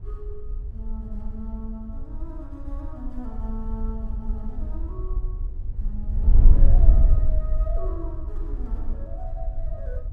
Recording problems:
wind on the microphone; below 50 Hz, SNR -14 dB

